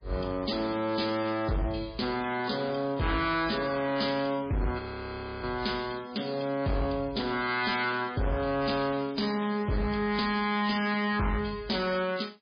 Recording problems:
codec artefacts; MP3, log-spectral distance 7 dB, nothing above 5 kHz
distortion; hard clipping, signal-to-distortion ratio 10 dB
frozen audio; at 5 s for 0.5 s

